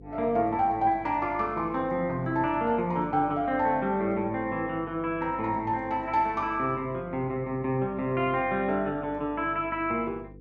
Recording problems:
electrical hum; 50 Hz, harmonics up to 500 Hz, SNR 20 dB

